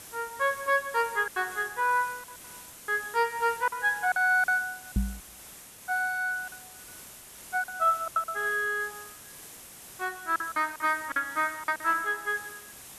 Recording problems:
hiss; slope -1 dB per octave, SNR 16 dB
packet loss; 9% of the sound replaced, filled with silence
microphone bump; at 5 s; peak +4 dB vs average level

